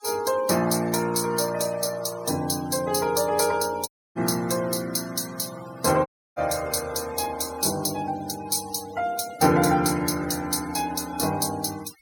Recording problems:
denoising artefacts; signal-to-artefact ratio 17 dB
audio cutting out; at 4 s and at 6 s

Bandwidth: 17.5 kHz